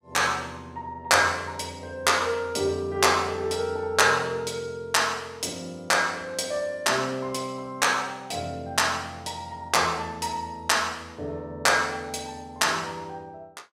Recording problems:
none

